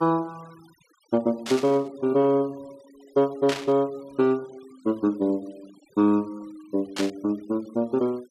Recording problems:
denoising artefacts; signal-to-artefact ratio 27 dB
static burst; at 1.5 s, at 3.5 s and at 7 s; peak -1 dB vs average level

